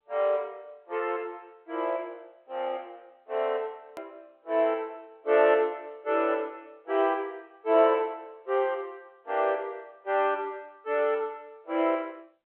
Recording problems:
telephone audio; 300 Hz to 3.5 kHz, G.711
hard cut with a click; at 4 s

